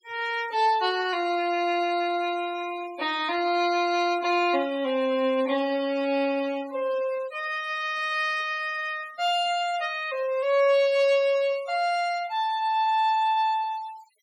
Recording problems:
denoising artefacts; signal-to-artefact ratio 20 dB

